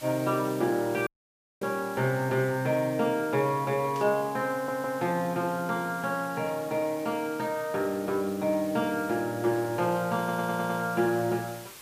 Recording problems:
background hiss; slope -1 dB per octave, SNR 18 dB
dropout; at 1 s for 0.5 s
static burst; at 4 s; peak -12 dB vs average level
stutter; at 4.5 s and at 10 s

